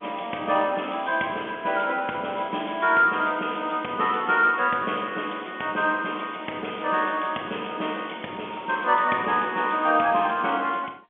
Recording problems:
telephone audio; 220 Hz to 3.4 kHz, G.711

